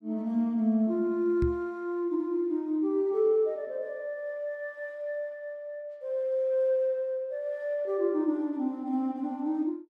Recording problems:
knock on the microphone; at 1.5 s; peak +2 dB vs average level

